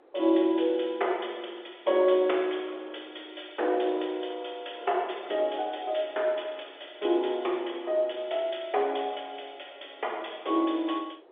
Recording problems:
phone line; 300 Hz to 3.6 kHz, G.711
wind on the microphone; below 760 Hz, SNR 23 dB

